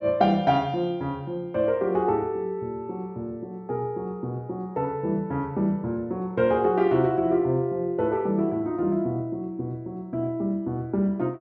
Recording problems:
none

